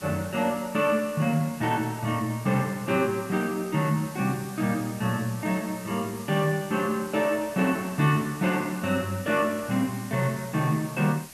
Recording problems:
hiss; slope -1 dB per octave, SNR 17 dB

